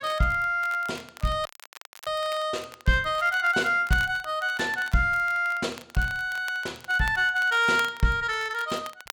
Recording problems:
crackle; vinyl, SNR 20 dB
audio cutting out; at 1.5 s for 0.5 s

